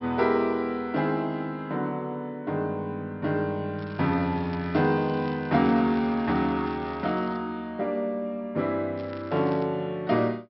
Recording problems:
treble missing; nothing above 5.5 kHz
crackle; from 4 to 7.5 s and at 9 s; loose cable, SNR 24 dB

